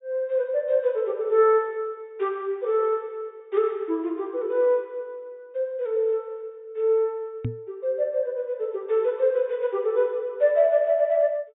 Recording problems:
low-pass filter; nothing above 4 kHz
microphone thump; at 7.5 s; peak -1 dB vs average level

